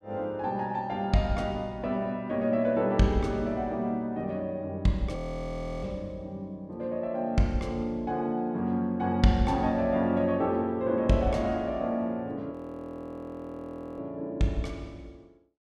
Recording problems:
frozen audio; at 5 s for 0.5 s and at 13 s for 1.5 s

